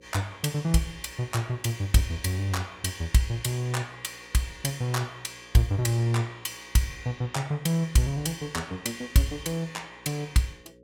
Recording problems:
hum; 60 Hz, harmonics up to 540 Hz, SNR 27 dB

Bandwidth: 17 kHz